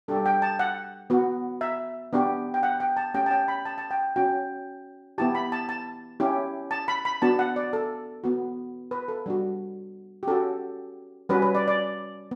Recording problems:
none

